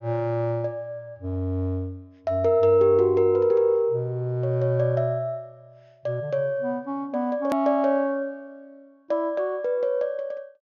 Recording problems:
treble cut off; nothing above 6.7 kHz
hard cut with a click; at 7.5 s

